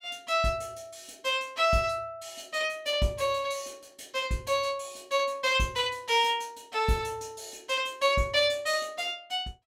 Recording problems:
none

